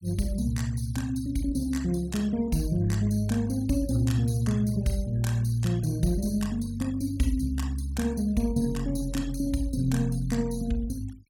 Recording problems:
denoising artefacts; signal-to-artefact ratio 21 dB

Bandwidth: 17.5 kHz